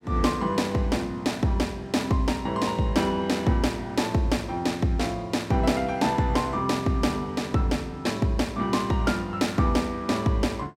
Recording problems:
none

